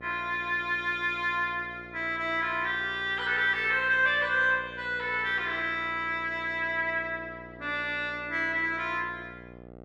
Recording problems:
hum; 60 Hz, harmonics up to 1.4 kHz, SNR 20 dB

